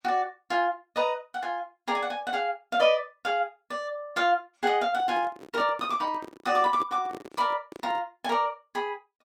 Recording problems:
handling noise; from 5 to 8 s; peak -7 dB vs average level

